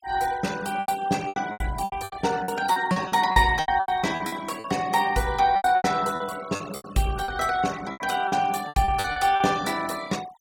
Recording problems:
noise reduction artefacts; signal-to-artefact ratio 17 dB
lost packets; 16% of the sound replaced, filled with repeated pitch periods

